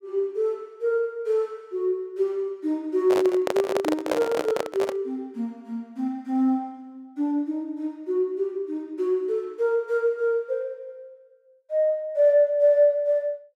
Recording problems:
handling noise; from 3 to 5 s; peak +4 dB vs average level

